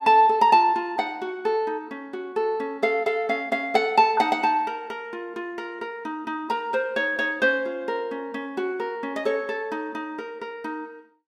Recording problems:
none

